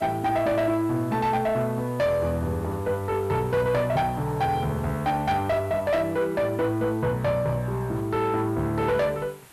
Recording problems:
distortion; soft clipping, signal-to-distortion ratio 12 dB
hiss; SNR 24 dB

